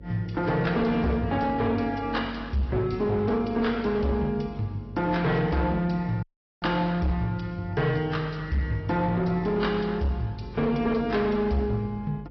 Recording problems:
treble cut off; nothing above 5.5 kHz
lossy codec; AAC, log-spectral distance 2 dB
distorted audio; hard clipping, signal-to-distortion ratio 11 dB
hum; 50 Hz, harmonics up to 550 Hz, SNR 18 dB
audio cutting out; at 6 s

